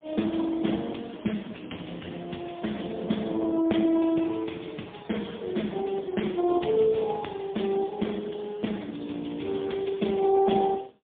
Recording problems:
telephone audio; 110 Hz to 3.6 kHz, AMR-NB, then MP3

